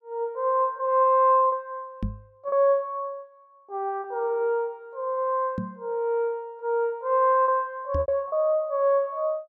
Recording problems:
lost packets; 3% of the sound replaced, filled with repeated pitch periods
microphone bump; at 2 s, at 5.5 s and at 8 s; peak -2 dB vs average level

